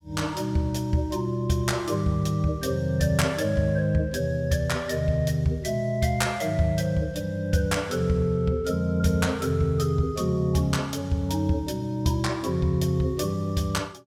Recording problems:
none

